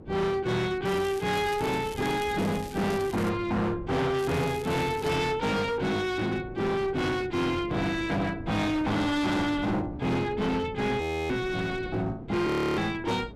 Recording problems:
distortion; hard clipping, signal-to-distortion ratio 8 dB
hum; 50 Hz, harmonics up to 500 Hz, SNR 22 dB
wind on the microphone; below 350 Hz, SNR 15 dB
crackling; from 1 to 3.5 s and at 4 s; loose cable, SNR 18 dB
frozen audio; at 11 s and at 12 s

